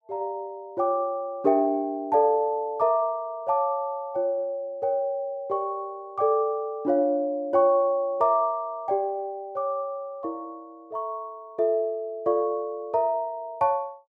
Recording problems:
none

